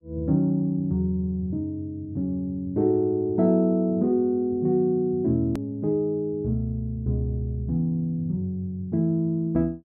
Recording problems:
click at an edit; at 5.5 s

